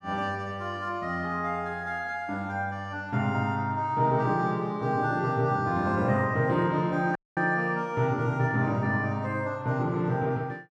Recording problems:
dropout; at 7 s

